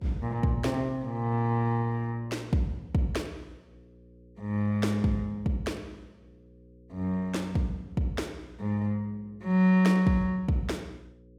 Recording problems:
hum; 60 Hz, harmonics up to 540 Hz, SNR 27 dB

